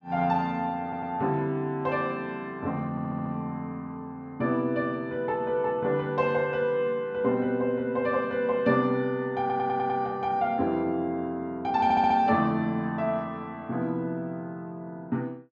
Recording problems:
stutter; 4 times, first at 1 s

